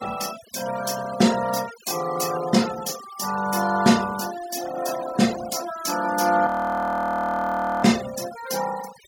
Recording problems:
noise reduction artefacts; signal-to-artefact ratio 14 dB
audio freezing; at 6.5 s for 1.5 s

